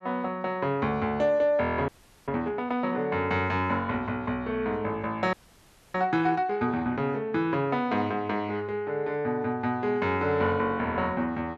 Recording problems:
audio freezing; at 2 s and at 5.5 s for 0.5 s

